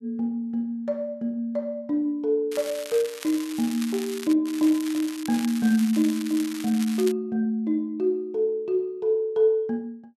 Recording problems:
crackle; from 2.5 to 4.5 s and from 4.5 to 7 s; loose cable, SNR 13 dB

